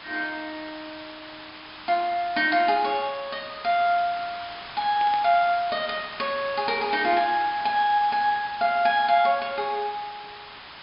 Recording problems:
low-pass filter; nothing above 5.5 kHz
hiss; SNR 15 dB
burst of static; at 5 s; peak -8 dB vs average level

